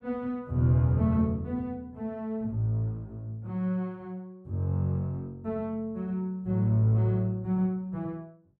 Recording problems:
none

